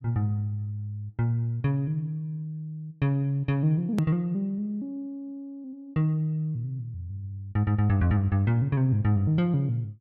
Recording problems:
click at an edit; at 4 s

